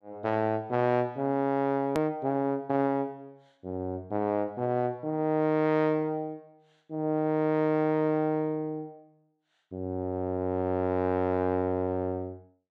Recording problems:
edit click; at 2 s

